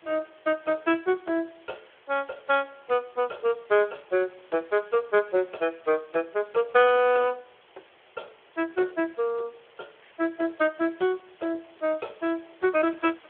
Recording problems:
phone line; 300 Hz to 3.4 kHz, Speex
background hiss; SNR 28 dB

